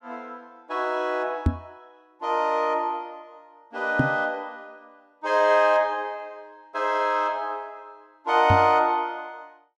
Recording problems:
microphone bump; at 1.5 s, at 4 s and at 8.5 s; peak +6 dB vs average level

